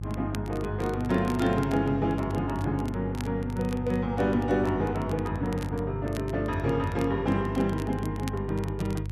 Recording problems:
electrical hum; 50 Hz, harmonics up to 350 Hz, SNR 6 dB
crackle; vinyl, SNR 20 dB

